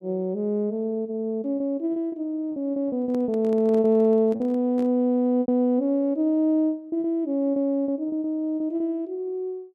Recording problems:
packet loss; 8% of the sound replaced, filled with repeated pitch periods
microphone handling noise; from 3 to 5 s; peak -11 dB vs average level

